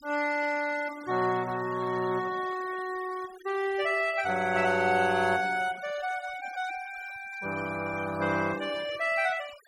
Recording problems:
denoising artefacts; signal-to-artefact ratio 18 dB

